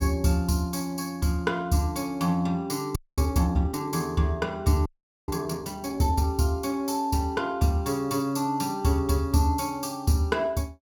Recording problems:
audio freezing; at 3 s and at 5 s

